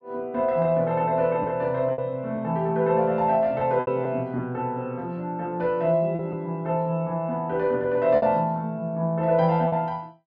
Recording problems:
lost packets; 3% of the sound replaced, filled with repeated pitch periods

